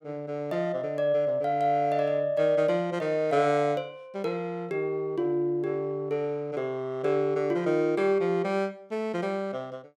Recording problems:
none

